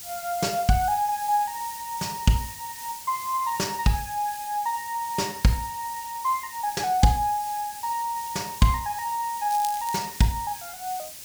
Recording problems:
background hiss; SNR 11 dB
crackling; at 9.5 s; loose cable, SNR 13 dB

